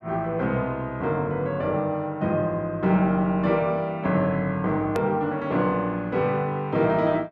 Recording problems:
edit click; at 5 s

